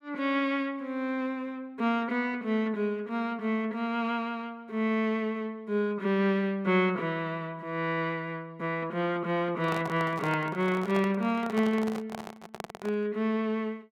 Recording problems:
handling noise; from 9.5 to 13 s; peak -4 dB vs average level

